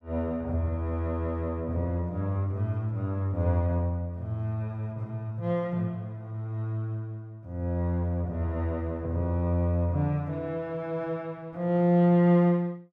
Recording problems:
none

